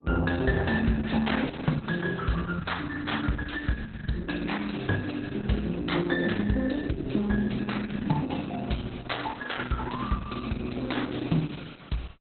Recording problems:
lossy compression; Opus, log-spectral distance 6 dB, nothing above 4.1 kHz

